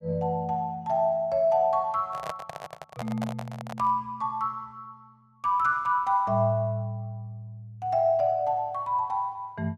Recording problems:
handling noise; from 2 to 4 s; peak -3 dB vs average level

